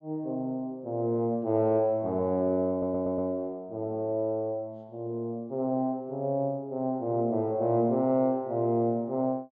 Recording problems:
audio stuttering; at 2.5 s

